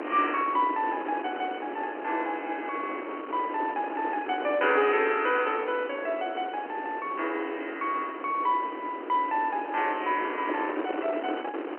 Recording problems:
phone line; 260 Hz to 3.1 kHz, G.711
wind on the microphone; below 950 Hz, SNR 7 dB

